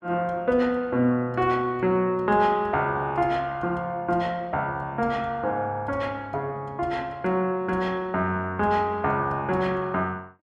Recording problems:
none

